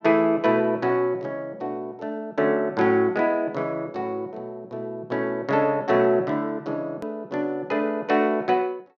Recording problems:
click at an edit; at 7 s

